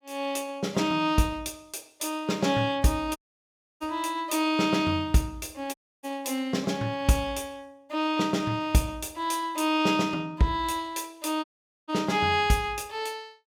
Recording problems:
audio cutting out; at 3 s for 0.5 s, at 5.5 s and at 11 s

